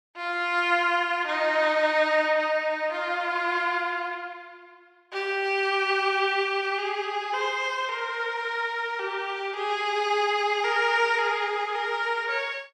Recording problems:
none

